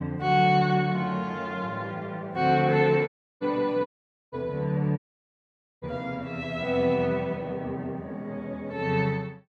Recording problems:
audio cutting out; at 3 s, at 4 s and at 5 s for 1 s

